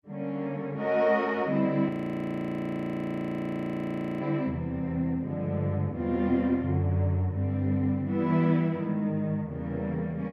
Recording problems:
frozen audio; at 2 s for 2.5 s

